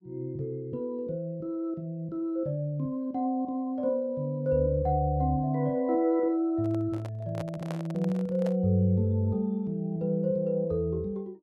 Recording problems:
handling noise; from 6.5 to 8.5 s; peak -5 dB vs average level

